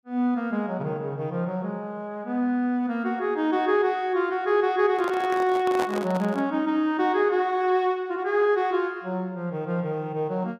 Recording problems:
handling noise; from 5 to 6.5 s; peak -1 dB vs average level

